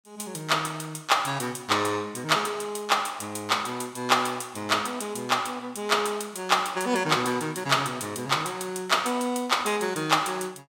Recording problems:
none

